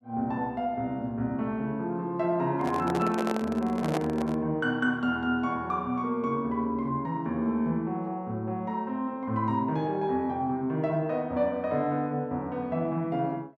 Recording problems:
microphone handling noise; from 2.5 to 4.5 s; peak +1 dB vs average level

